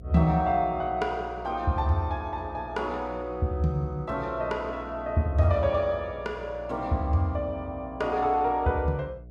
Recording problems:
hum; 60 Hz, harmonics up to 660 Hz, SNR 17 dB

